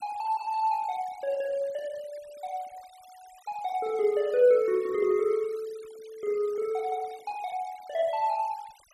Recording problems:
denoising artefacts; signal-to-artefact ratio 25 dB

